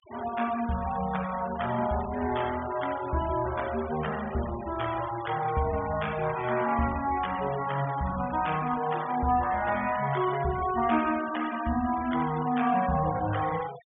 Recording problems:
treble cut off; nothing above 3.5 kHz
noise reduction artefacts; signal-to-artefact ratio 14 dB

